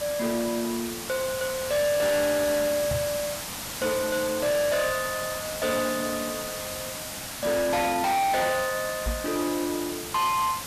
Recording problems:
distortion; hard clipping, signal-to-distortion ratio 11 dB
hiss; slope -1 dB per octave, SNR 6 dB
microphone bump; at 3 s and at 9 s; peak 0 dB vs average level

